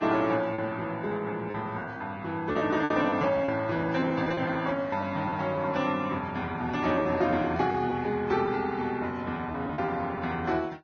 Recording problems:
lossy codec; Vorbis, log-spectral distance 3 dB, nothing above 6.3 kHz
lost packets; 8% of the sound replaced, filled with repeated pitch periods

